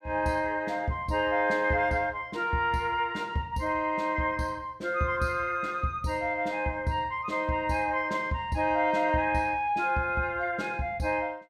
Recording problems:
none

